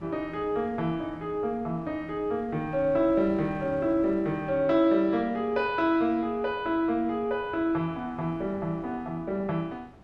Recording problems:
wind on the microphone; below 500 Hz, SNR 21 dB

